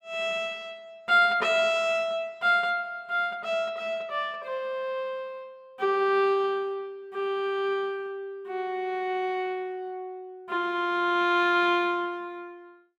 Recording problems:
none

